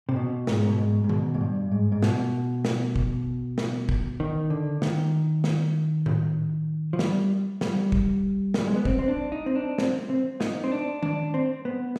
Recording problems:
none

